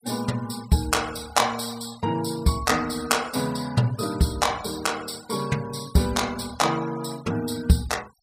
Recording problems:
noise reduction artefacts; signal-to-artefact ratio 18 dB

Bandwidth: 15.5 kHz